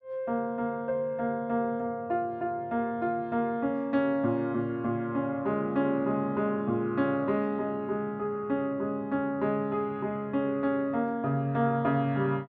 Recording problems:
none

